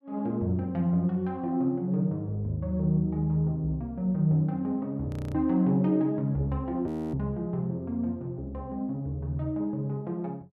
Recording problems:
audio freezing; at 5 s and at 7 s

